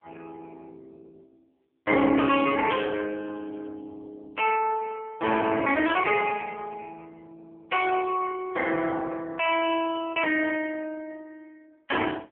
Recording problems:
telephone audio; 240 Hz to 3.1 kHz, AMR-NB

